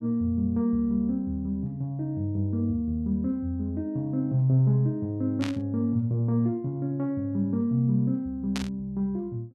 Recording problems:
static burst; at 5.5 s and at 8.5 s; peak -3 dB vs average level

